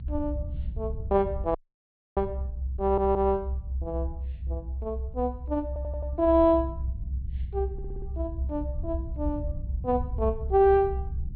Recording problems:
treble missing; nothing above 4.5 kHz
rumble; below 70 Hz, strongest tone 64 Hz, SNR 6 dB
dropout; at 1.5 s for 0.5 s
audio stuttering; at 3 s, at 5.5 s and at 7.5 s

